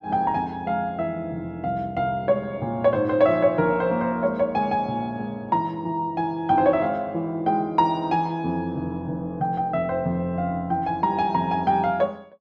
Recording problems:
none

